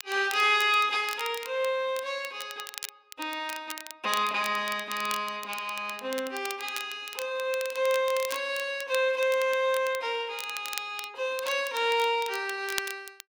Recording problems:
crackle; vinyl, SNR 13 dB

